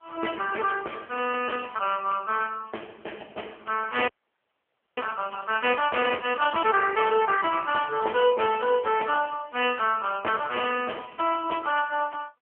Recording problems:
telephone audio; 370 Hz to 3.1 kHz, AMR-NB
frozen audio; at 4 s for 1 s

